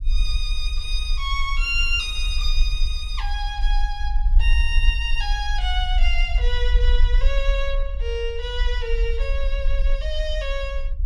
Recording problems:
rumble; below 46 Hz, strongest tone 24 Hz, SNR -2 dB

